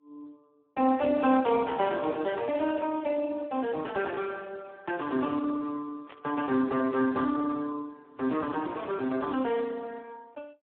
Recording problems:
phone line; 220 Hz to 2.6 kHz, Speex
static burst; at 1 s, at 2.5 s and at 6 s; peak -13 dB vs average level

